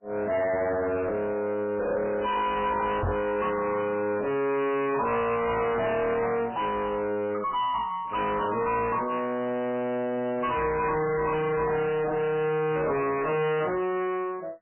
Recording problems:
codec artefacts; MP3, then AAC, log-spectral distance 3 dB, nothing above 3 kHz
distortion; soft clipping, signal-to-distortion ratio 5 dB
microphone thump; at 3 s; peak +3 dB vs average level

